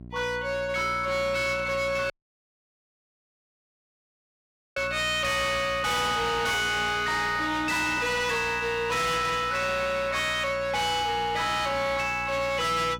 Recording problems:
distorted audio; hard clipping, signal-to-distortion ratio 7 dB
hum; 60 Hz, harmonics up to 720 Hz, SNR 18 dB
audio cutting out; at 2 s for 2.5 s

